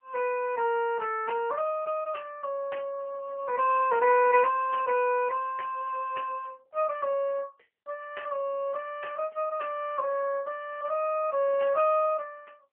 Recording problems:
phone line; 240 Hz to 3.1 kHz, AMR-NB

